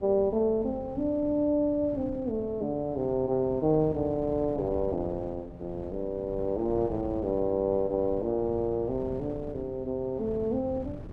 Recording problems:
wind noise; below 270 Hz, SNR 14 dB

